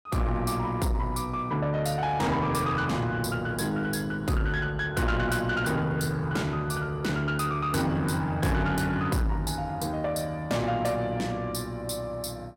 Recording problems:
distorted audio; soft clipping, signal-to-distortion ratio 10 dB

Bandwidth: 16.5 kHz